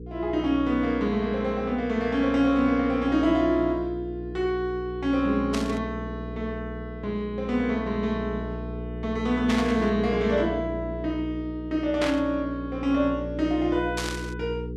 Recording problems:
electrical hum; 60 Hz, harmonics up to 480 Hz, SNR 10 dB
static burst; 4 times, first at 5.5 s; peak 0 dB vs average level

